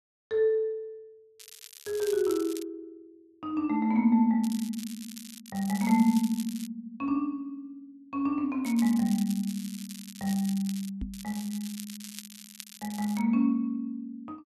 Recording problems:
crackle; 4 times, first at 1.5 s; loose cable, SNR 15 dB
microphone thump; at 11 s; peak -4 dB vs average level

